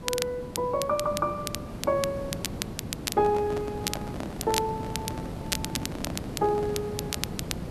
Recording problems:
background hiss; slope -8 dB per octave, SNR 7 dB
crackling; vinyl, SNR 6 dB
handling noise; from 3 to 7 s; peak -3 dB vs average level

